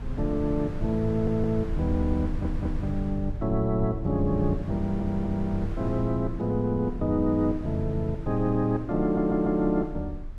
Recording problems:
rumble; below 62 Hz, strongest tone 26 Hz, SNR 11 dB
wind on the microphone; below 400 Hz, SNR 16 dB
audio stuttering; 4 times, first at 1 s

